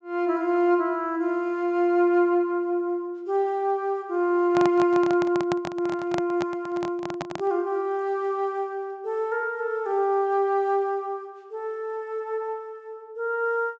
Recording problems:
treble cut off; nothing above 8 kHz
microphone handling noise; from 4.5 to 7.5 s; peak 0 dB vs average level

